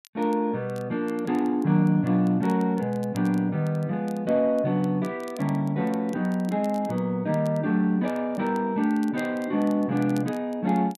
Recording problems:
crackle; vinyl, SNR 28 dB

